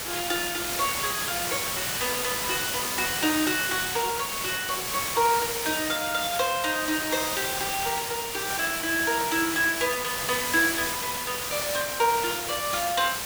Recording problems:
background hiss; slope -1 dB per octave, SNR 1 dB

